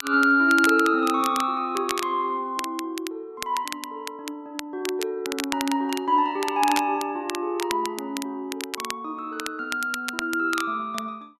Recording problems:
crackling; vinyl, SNR 10 dB

